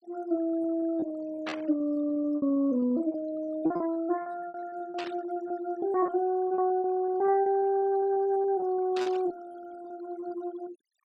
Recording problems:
noise reduction artefacts; signal-to-artefact ratio 23 dB
lost packets; 15% of the sound replaced, filled with repeated pitch periods
static burst; at 1.5 s, at 5 s and at 9 s; peak -3 dB vs average level

